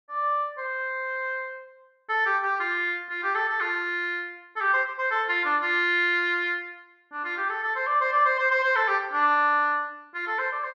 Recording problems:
none

